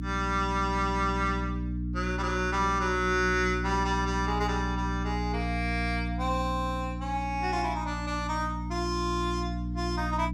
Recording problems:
hum; 60 Hz, harmonics up to 300 Hz, SNR 3 dB

